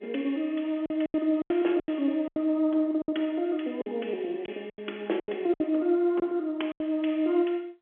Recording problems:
phone line; 240 Hz to 3.4 kHz, G.711
packet loss; 10% of the sound replaced, filled with silence

